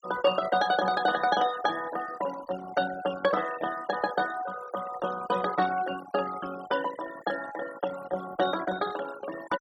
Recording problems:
noise reduction artefacts; signal-to-artefact ratio 11 dB

